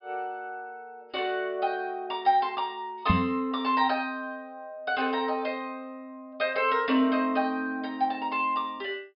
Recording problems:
low-pass filter; nothing above 5.5 kHz
microphone bump; at 3 s; peak +8 dB vs average level

